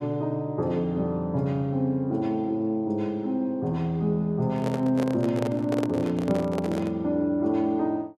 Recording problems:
handling noise; from 4.5 to 7 s; peak -1 dB vs average level

